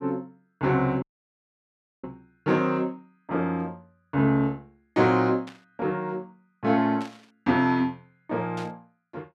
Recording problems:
dropout; at 1 s for 1 s
burst of static; at 5.5 s, at 7 s and at 8.5 s; peak -11 dB vs average level

